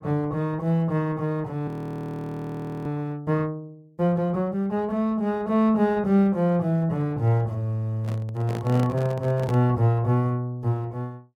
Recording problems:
frozen audio; at 1.5 s for 1 s
handling noise; from 8 to 9.5 s; peak -5 dB vs average level

